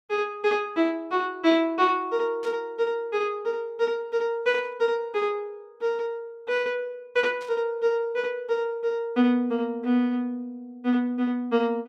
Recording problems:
burst of static; at 2.5 s, at 4.5 s and at 7.5 s; peak -15 dB vs average level

